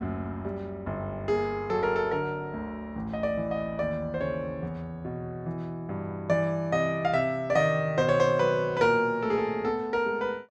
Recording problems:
none

